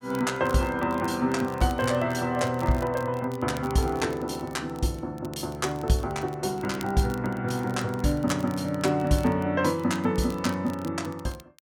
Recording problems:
crackling; vinyl, SNR 22 dB

